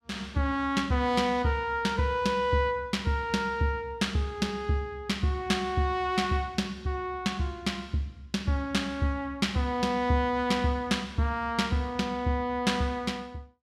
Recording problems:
none

